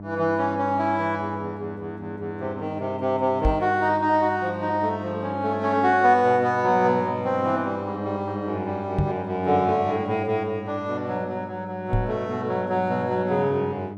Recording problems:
hum; 50 Hz, harmonics up to 1 kHz, SNR 12 dB
microphone thump; at 3.5 s, at 9 s and at 12 s; peak +4 dB vs average level

